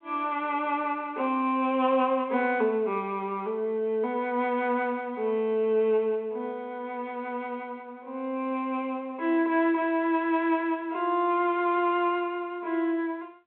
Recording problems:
phone line; 280 Hz to 3.3 kHz, G.726

